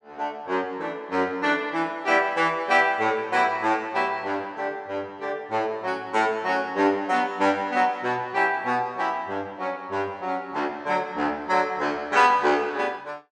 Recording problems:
none

